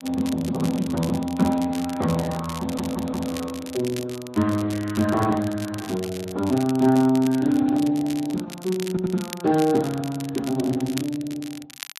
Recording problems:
codec artefacts; Speex, log-spectral distance 2 dB
crackling; vinyl, SNR 16 dB
audio stuttering; at 2.5 s and at 9 s

